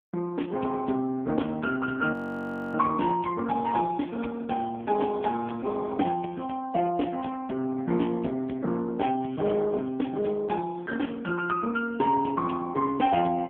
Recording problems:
telephone audio; 130 Hz to 2.8 kHz, AMR-NB
audio freezing; at 2 s for 0.5 s

